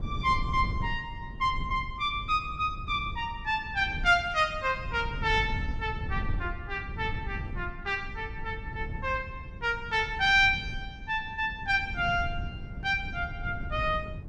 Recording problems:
wind on the microphone; below 120 Hz, SNR 10 dB

